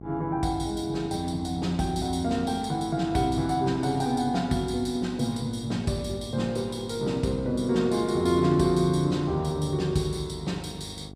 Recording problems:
electrical hum; 50 Hz, harmonics up to 1.1 kHz, SNR 16 dB

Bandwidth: 15.5 kHz